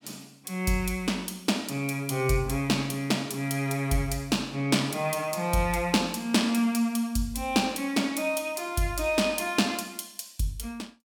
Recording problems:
none

